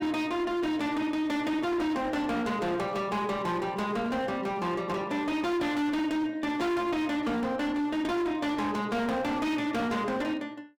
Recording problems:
distortion; hard clipping, signal-to-distortion ratio 8 dB

